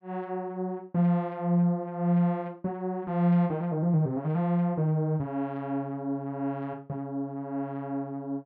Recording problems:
none

